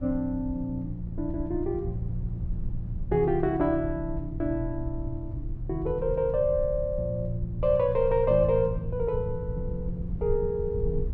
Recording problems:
low-frequency rumble; below 86 Hz, SNR 9 dB

